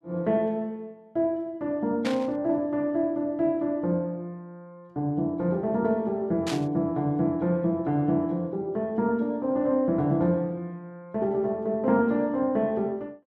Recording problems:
burst of static; at 2 s and at 6.5 s; peak -3 dB vs average level

